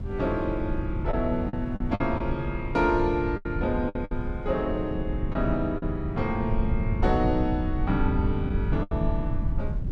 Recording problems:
low-frequency rumble; below 110 Hz, SNR 3 dB
wind on the microphone; below 160 Hz, SNR 14 dB
packet loss; 5% of the sound replaced, filled with the last packet

